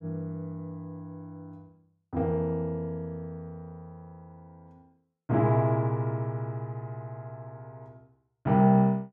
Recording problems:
none

